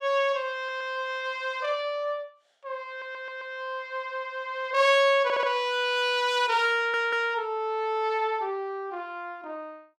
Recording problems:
audio stuttering; 4 times, first at 0.5 s

